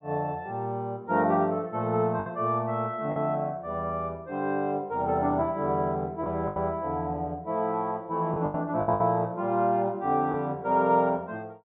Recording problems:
treble missing; nothing above 4 kHz
lost packets; 4% of the sound replaced, filled with the last packet

